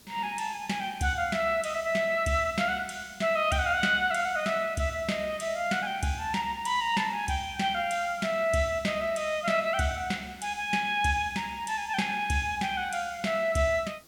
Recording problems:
background hiss; SNR 26 dB

